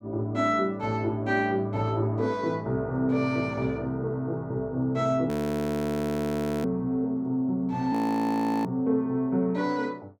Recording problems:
audio freezing; at 5.5 s for 1.5 s and at 8 s for 0.5 s

